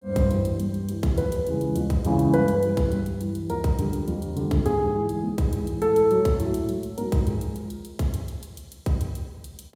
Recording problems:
none

